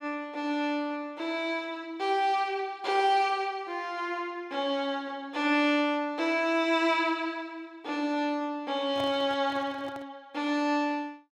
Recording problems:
microphone handling noise; from 9 to 10 s; peak -5 dB vs average level

